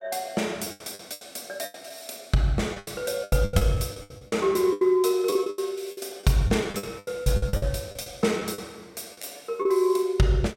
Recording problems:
packet loss; 15% of the sound replaced, filled with the last packet

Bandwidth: 16 kHz